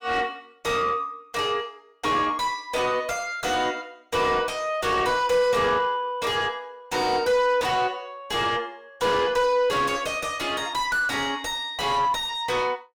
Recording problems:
distortion; soft clipping, signal-to-distortion ratio 7 dB

